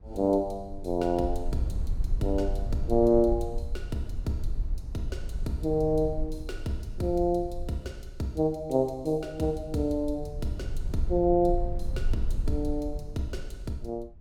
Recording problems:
rumble; below 56 Hz, SNR 7 dB

